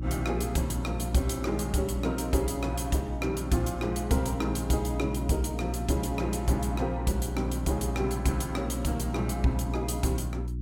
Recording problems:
hum; 60 Hz, harmonics up to 360 Hz, SNR 5 dB

